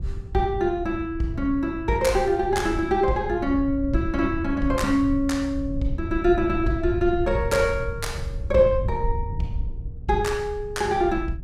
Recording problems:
rumble; below 92 Hz, SNR 9 dB

